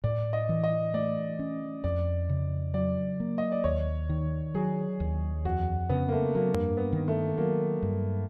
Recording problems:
edit click; at 6.5 s

